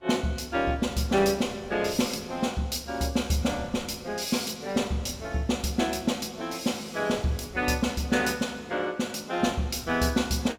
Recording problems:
wind noise; below 550 Hz, SNR 20 dB

